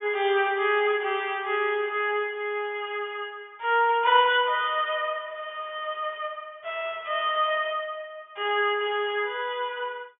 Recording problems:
low-pass filter; nothing above 3.5 kHz

